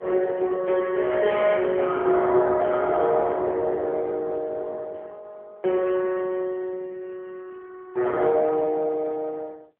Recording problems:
telephone audio; 320 Hz to 3.4 kHz, AMR-NB

